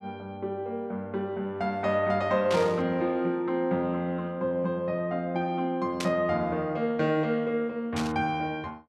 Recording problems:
static burst; at 2.5 s, at 6 s and at 8 s; peak -1 dB vs average level

